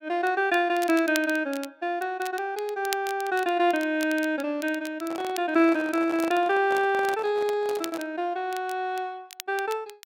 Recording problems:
crackling; vinyl, SNR 16 dB
microphone handling noise; from 5 to 8 s; peak -7 dB vs average level

